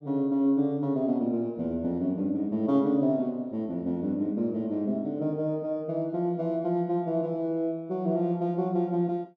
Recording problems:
none

